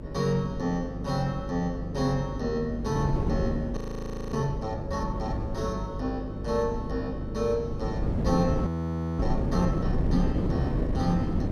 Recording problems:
hum; 50 Hz, harmonics up to 600 Hz, SNR 7 dB
wind on the microphone; below 270 Hz, SNR 2 dB
frozen audio; at 4 s for 0.5 s and at 8.5 s for 0.5 s

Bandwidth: 15 kHz